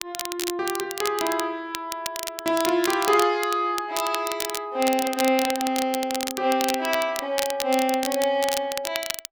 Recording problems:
crackle; vinyl, SNR 7 dB

